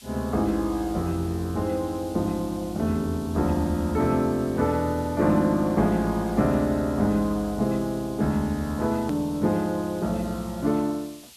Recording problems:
hiss; SNR 21 dB
click at an edit; at 9 s

